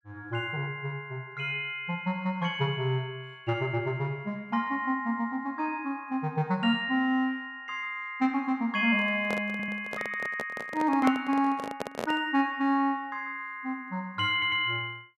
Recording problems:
handling noise; from 9 to 12 s; peak +2 dB vs average level
audio stuttering; at 9.5 s and at 14 s

